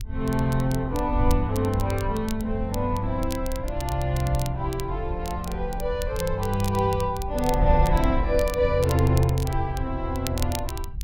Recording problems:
wind noise; below 70 Hz, SNR 6 dB
crackling; vinyl, SNR 15 dB

